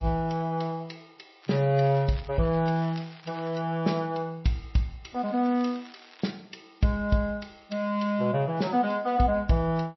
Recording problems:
lossy compression; MP3, log-spectral distance 4 dB, nothing above 5.7 kHz
crackling; from 1.5 to 3.5 s and from 5 to 6 s; loose cable, SNR 23 dB

